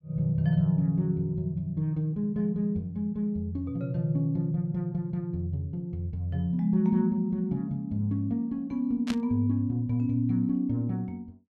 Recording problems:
burst of static; at 9 s; peak -4 dB vs average level

